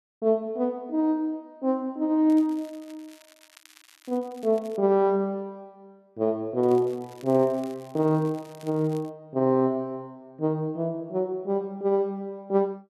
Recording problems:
crackle; from 2.5 to 5 s and from 6.5 to 9 s; loose cable, SNR 27 dB

